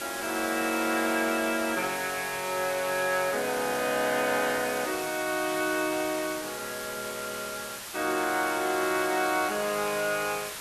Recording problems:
background hiss; slope 0 dB per octave, SNR 8 dB

